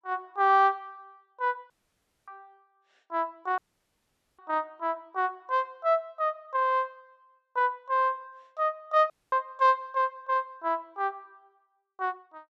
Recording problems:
dropout; at 1.5 s for 0.5 s, at 3.5 s for 1 s and at 9 s

